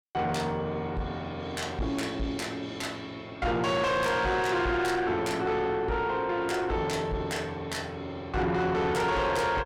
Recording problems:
distortion; soft clipping, signal-to-distortion ratio 7 dB

